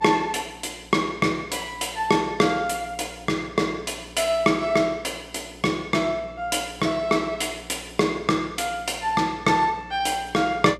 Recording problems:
mains hum; 60 Hz, harmonics up to 540 Hz, SNR 22 dB

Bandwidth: 14.5 kHz